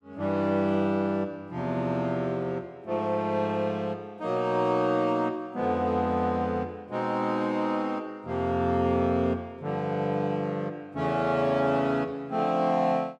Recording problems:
none

